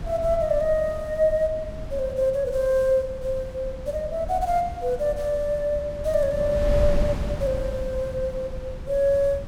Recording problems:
wind noise; below 120 Hz, SNR 9 dB

